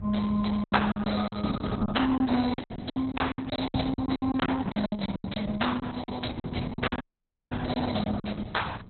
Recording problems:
codec artefacts; Opus, log-spectral distance 7 dB, nothing above 4.1 kHz
hum; 50 Hz, harmonics up to 1.3 kHz, SNR 22 dB
wind on the microphone; below 160 Hz, SNR 9 dB
lost packets; 16% of the sound replaced, filled with silence
dropout; at 7 s for 0.5 s

